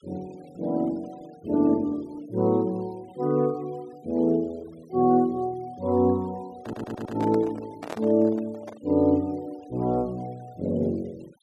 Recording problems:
denoising artefacts; signal-to-artefact ratio 28 dB
microphone handling noise; from 6.5 to 9 s; peak -5 dB vs average level
audio stuttering; at 6.5 s

